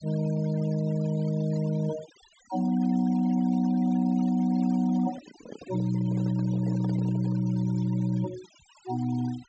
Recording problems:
treble missing; nothing above 8 kHz
denoising artefacts; signal-to-artefact ratio 21 dB
handling noise; from 5 to 7.5 s; peak -10 dB vs average level

